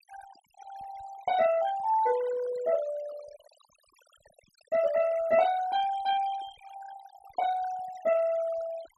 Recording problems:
denoising artefacts; signal-to-artefact ratio 16 dB

